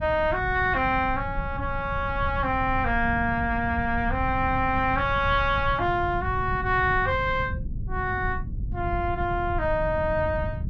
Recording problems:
low-frequency rumble; below 120 Hz, SNR 8 dB

